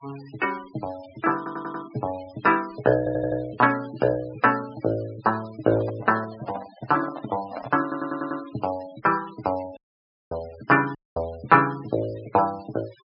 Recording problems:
low-pass filter; nothing above 5.5 kHz
denoising artefacts; signal-to-artefact ratio 20 dB
audio stuttering; at 1.5 s, at 3 s and at 8 s
microphone handling noise; from 5.5 to 8 s; peak -5 dB vs average level
dropout; at 10 s for 0.5 s and at 11 s

